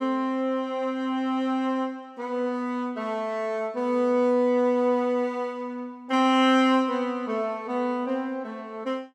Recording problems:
none

